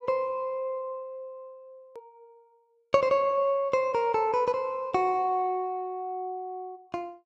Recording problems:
click at an edit; at 2 s

